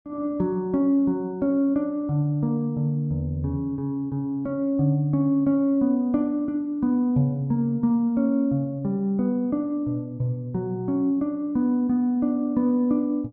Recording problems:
none

